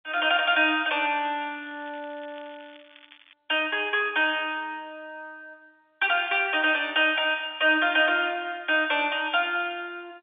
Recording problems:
phone line; 320 Hz to 3.6 kHz, G.711
crackle; from 0.5 to 3.5 s; loose cable, SNR 27 dB

